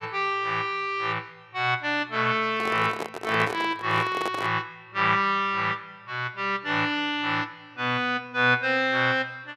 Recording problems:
handling noise; from 2.5 to 4.5 s; peak -2 dB vs average level

